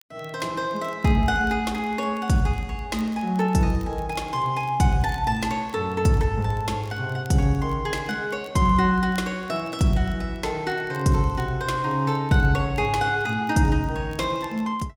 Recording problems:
crackling; vinyl, SNR 30 dB

